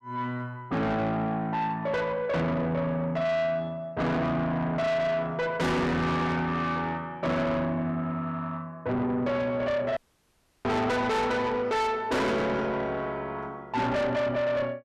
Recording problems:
distorted audio; soft clipping, signal-to-distortion ratio 6 dB
audio cutting out; at 10 s for 0.5 s

